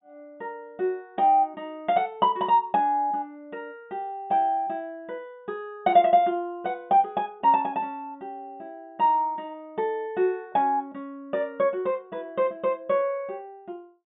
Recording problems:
low-pass filter; nothing above 4 kHz

